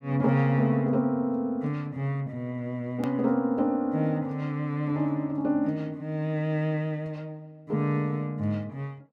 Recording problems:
hard cut with a click; at 3 s

